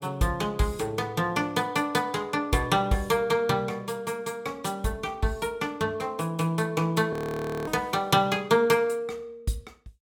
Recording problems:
audio freezing; at 7 s for 0.5 s

